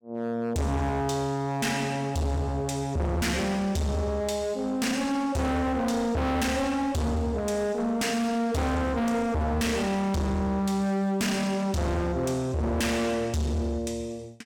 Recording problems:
distorted audio; hard clipping, signal-to-distortion ratio 6 dB

